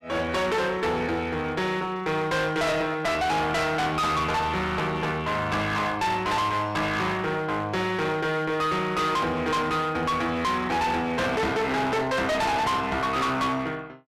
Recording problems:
distorted audio; hard clipping, uneven, signal-to-distortion ratio 5 dB

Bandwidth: 14 kHz